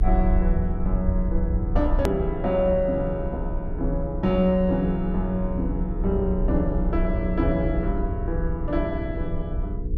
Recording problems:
mains hum; 60 Hz, harmonics up to 480 Hz, SNR 8 dB
low-frequency rumble; below 62 Hz, strongest tone 34 Hz, SNR 4 dB
edit click; at 2 s

